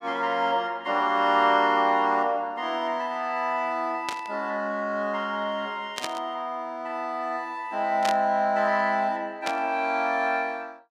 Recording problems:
static burst; 4 times, first at 4 s; peak -1 dB vs average level

